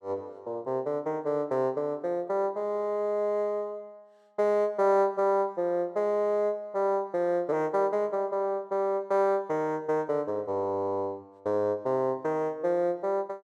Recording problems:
none

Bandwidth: 12.5 kHz